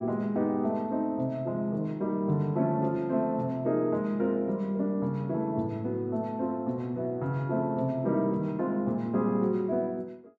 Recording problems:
none

